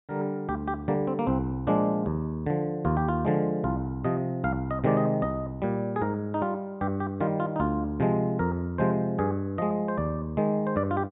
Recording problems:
low-pass filter; nothing above 4 kHz

